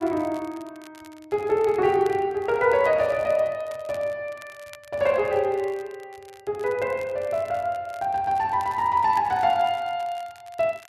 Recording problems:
crackling; vinyl, SNR 26 dB

